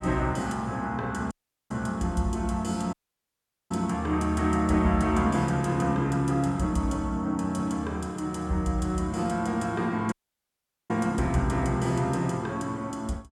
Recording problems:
audio cutting out; at 1.5 s, at 3 s for 1 s and at 10 s for 1 s

